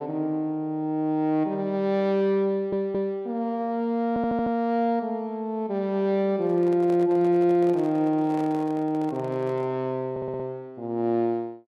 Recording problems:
audio stuttering; at 2.5 s, at 4 s and at 10 s
handling noise; from 6.5 to 10 s; peak -10 dB vs average level

